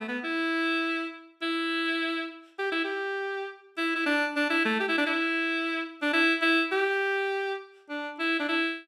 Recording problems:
none

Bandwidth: 15.5 kHz